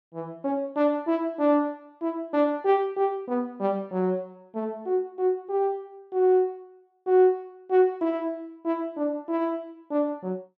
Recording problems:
none

